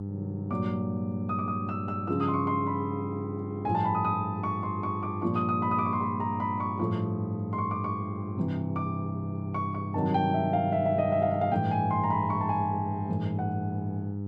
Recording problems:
hum; 50 Hz, harmonics up to 500 Hz, SNR 6 dB

